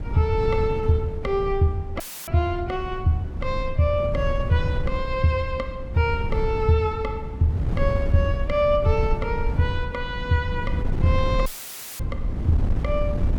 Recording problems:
wind noise; below 110 Hz, SNR 5 dB
audio cutting out; at 2 s and at 11 s for 0.5 s; filled with static

